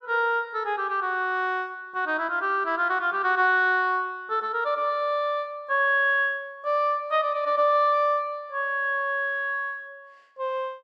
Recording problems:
none

